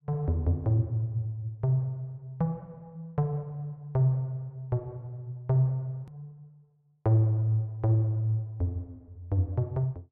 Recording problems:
edit click; at 6 s

